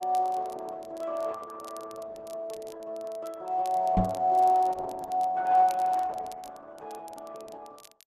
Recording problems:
codec artefacts; Opus, log-spectral distance 2 dB
crackling; vinyl, SNR 26 dB
knock on the microphone; at 4 s; peak +5 dB vs average level

